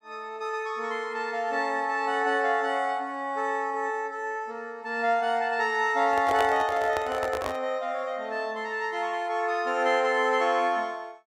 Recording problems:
handling noise; from 6 to 7.5 s; peak +1 dB vs average level

